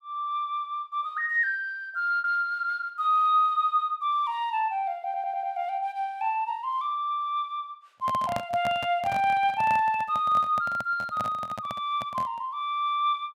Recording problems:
packet loss; 0.5% of the sound replaced, filled with repeated pitch periods
stutter; at 5 s
handling noise; from 8 to 12 s; peak -2 dB vs average level

